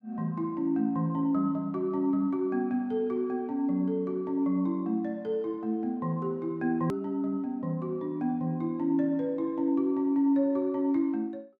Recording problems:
click at an edit; at 7 s

